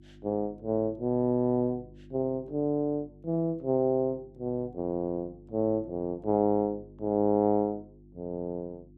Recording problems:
electrical hum; 50 Hz, harmonics up to 350 Hz, SNR 23 dB

